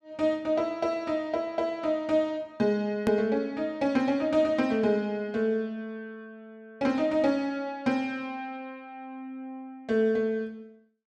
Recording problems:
hard cut with a click; at 3 s

